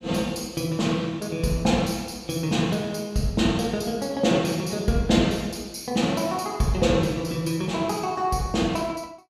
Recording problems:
none

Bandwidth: 14.5 kHz